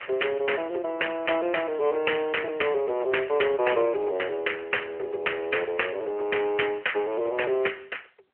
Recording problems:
phone line; 370 Hz to 3.1 kHz, AMR-NB

